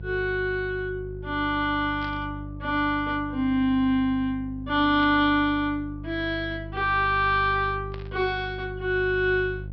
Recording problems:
treble missing; nothing above 5.5 kHz
mains hum; 50 Hz, harmonics up to 500 Hz, SNR 13 dB
static burst; at 2 s, at 5 s and at 8 s; peak -14 dB vs average level

